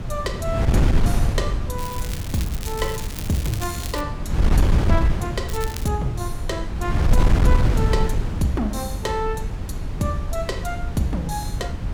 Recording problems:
electrical hum; 60 Hz, harmonics up to 780 Hz, SNR 17 dB
wind on the microphone; below 120 Hz, SNR -3 dB
crackle; from 2 to 4 s and at 5.5 s; loose cable, SNR 8 dB

